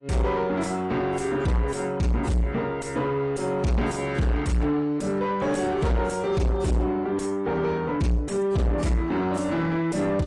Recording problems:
codec artefacts; AAC, log-spectral distance 2 dB
distorted audio; soft clipping, signal-to-distortion ratio 5 dB

